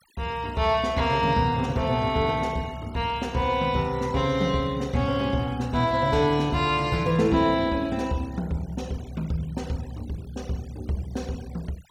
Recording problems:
noise reduction artefacts; signal-to-artefact ratio 24 dB

